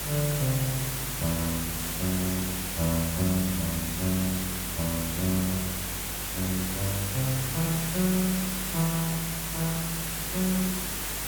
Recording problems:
hum; 50 Hz, harmonics up to 500 Hz, SNR 12 dB
hiss; slope -1 dB per octave, SNR 1 dB

